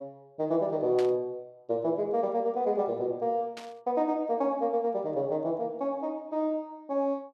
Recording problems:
static burst; at 1 s and at 3.5 s; peak -8 dB vs average level

